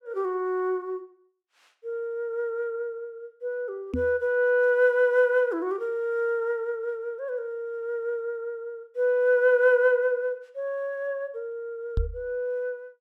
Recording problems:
knock on the microphone; at 4 s and at 12 s; peak +2 dB vs average level

